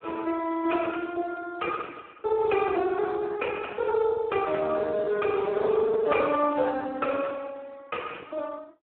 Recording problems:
telephone audio; 280 Hz to 3.3 kHz, Speex

